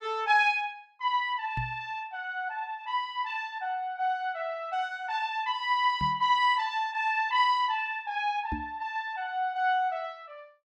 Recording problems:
knock on the microphone; at 1.5 s, at 6 s and at 8.5 s; peak -3 dB vs average level

